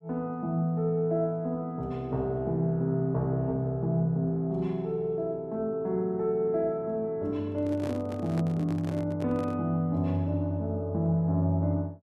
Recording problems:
microphone handling noise; from 7.5 to 9.5 s; peak -5 dB vs average level

